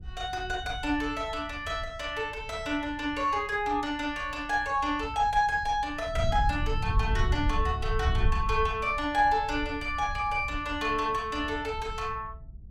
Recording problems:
wind on the microphone; below 86 Hz, SNR 7 dB

